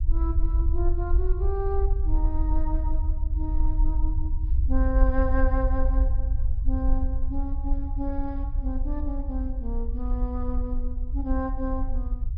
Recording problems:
low-pass filter; nothing above 5.5 kHz
low-frequency rumble; below 58 Hz, SNR -6 dB

